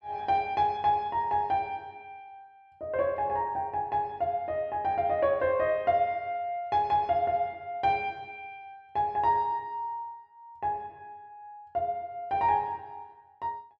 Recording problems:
none

